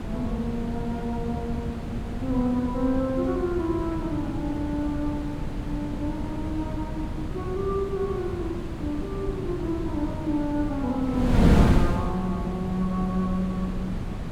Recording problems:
wind noise; below 240 Hz, SNR 1 dB

